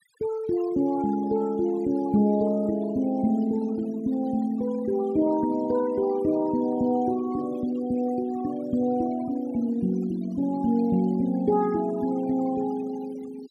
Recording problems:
noise reduction artefacts; signal-to-artefact ratio 20 dB

